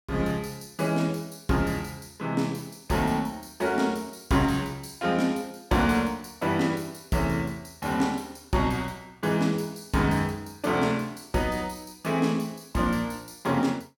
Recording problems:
none

